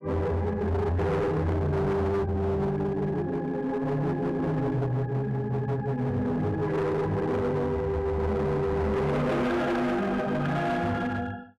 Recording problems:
distortion; hard clipping, uneven, signal-to-distortion ratio 7 dB

